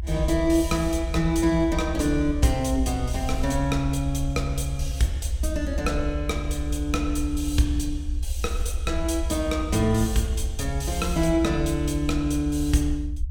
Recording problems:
low-frequency rumble; below 74 Hz, SNR 5 dB

